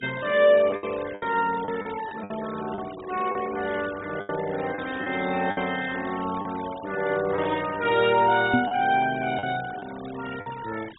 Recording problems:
treble missing; nothing above 4 kHz
noise reduction artefacts; signal-to-artefact ratio 15 dB
packet loss; 7% of the sound replaced, filled with the last packet
microphone bump; at 8.5 s; peak +6 dB vs average level

